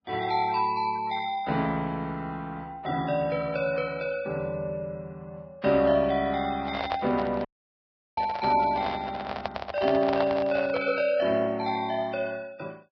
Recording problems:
lossy compression; Vorbis, log-spectral distance 3 dB, nothing above 4.6 kHz
handling noise; from 6.5 to 11 s; peak +2 dB vs average level
audio cutting out; at 7.5 s for 0.5 s

